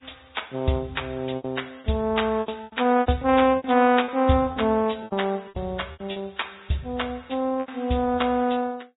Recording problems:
treble cut off; nothing above 3.8 kHz
lossy compression; Vorbis, log-spectral distance 5 dB
packet loss; 11% of the sound replaced, filled with repeated pitch periods

